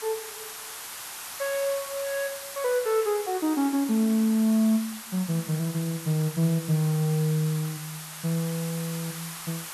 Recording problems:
hiss; SNR 10 dB

